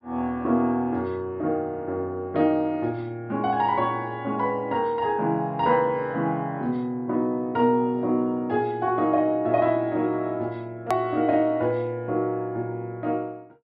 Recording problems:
treble cut off; nothing above 5.5 kHz
edit click; at 11 s

